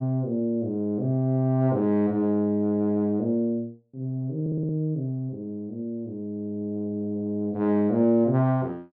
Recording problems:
stutter; at 4.5 s

